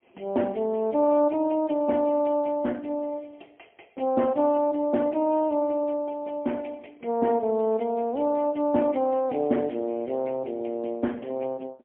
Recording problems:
telephone audio; 220 Hz to 2.7 kHz, AMR-NB, then MP3

